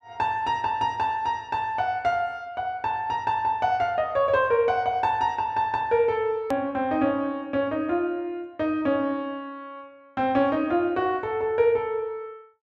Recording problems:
edit click; at 6.5 s

